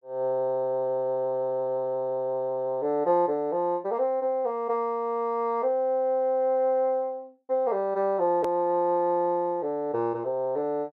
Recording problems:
hard cut with a click; at 8.5 s

